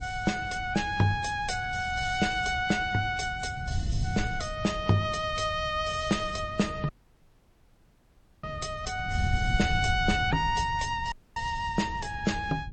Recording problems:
lossy compression; MP3, log-spectral distance 3 dB, nothing above 8.2 kHz
wind on the microphone; below 120 Hz, SNR 8 dB
dropout; at 7 s for 1.5 s and at 11 s

